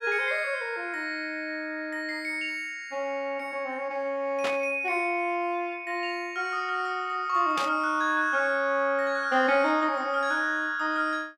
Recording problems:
static burst; at 4.5 s and at 7.5 s; peak -2 dB vs average level

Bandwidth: 16 kHz